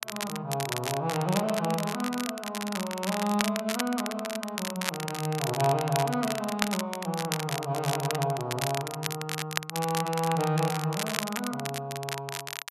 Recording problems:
crackling; vinyl, SNR 4 dB

